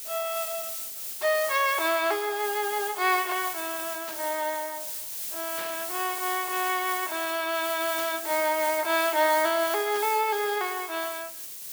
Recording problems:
hiss; SNR 6 dB
burst of static; 4 times, first at 4 s; peak -8 dB vs average level

